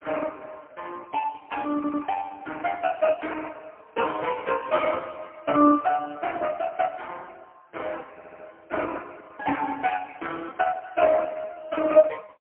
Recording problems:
phone line; 220 Hz to 3.1 kHz, AMR-NB, then MP3
audio stuttering; at 2 s and at 8 s

